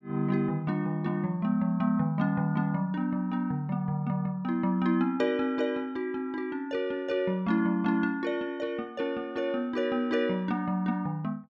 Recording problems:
none

